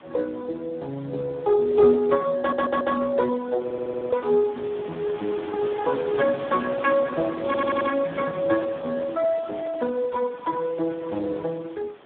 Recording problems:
phone line; 220 Hz to 2.2 kHz, Speex
wind on the microphone; below 1.9 kHz, SNR 17 dB
stutter; at 2.5 s, at 3.5 s and at 7.5 s

